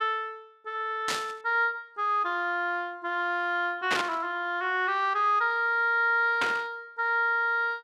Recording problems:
static burst; at 1 s, at 4 s and at 6.5 s; peak +2 dB vs average level

